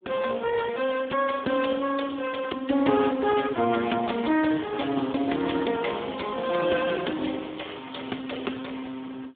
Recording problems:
phone line; 190 Hz to 3 kHz, Speex

